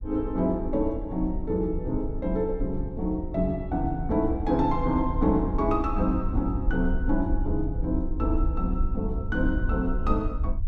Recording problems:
low-frequency rumble; below 66 Hz, SNR 5 dB

